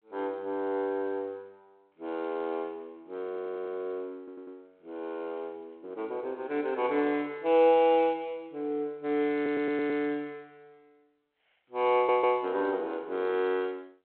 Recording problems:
telephone audio; 320 Hz to 3.6 kHz, G.726
stutter; 4 times, first at 3.5 s

